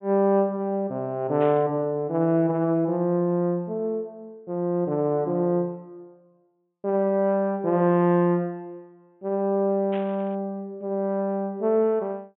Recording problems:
treble missing; nothing above 3.4 kHz
burst of static; at 1.5 s and at 10 s; peak -13 dB vs average level

